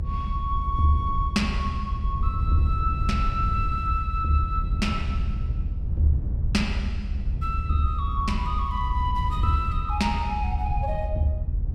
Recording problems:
rumble; below 84 Hz, SNR 1 dB

